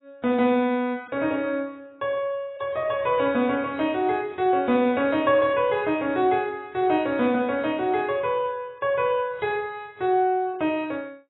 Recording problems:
lossy compression; AAC, log-spectral distance 2 dB, nothing above 3.4 kHz

